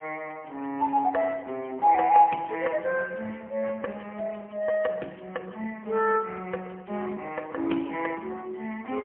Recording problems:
telephone audio; 280 Hz to 2.7 kHz, AMR-NB, then MP3

